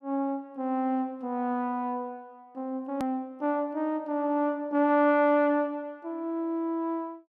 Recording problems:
hard cut with a click; at 3 s

